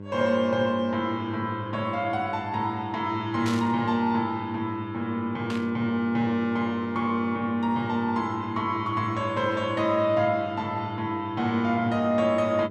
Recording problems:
hum; 50 Hz, harmonics up to 1.1 kHz, SNR 13 dB
static burst; at 3.5 s and at 5.5 s; peak -5 dB vs average level

